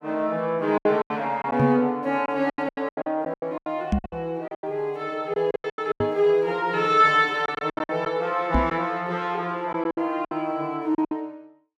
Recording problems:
lost packets; 14% of the sound replaced, filled with silence
knock on the microphone; 4 times, first at 1.5 s; peak +5 dB vs average level

